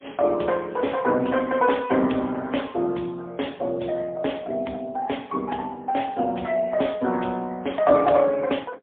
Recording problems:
phone line; 220 Hz to 3.4 kHz, AMR-NB, then MP3

